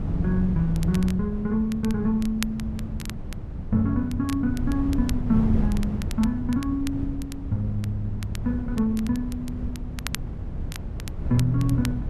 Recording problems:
wind noise; below 140 Hz, SNR 6 dB
crackling; vinyl, SNR 16 dB

